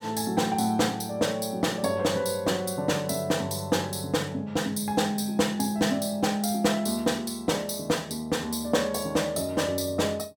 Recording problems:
none

